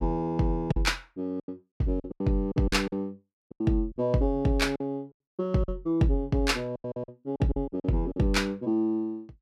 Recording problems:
packet loss; 11% of the sound replaced, filled with silence

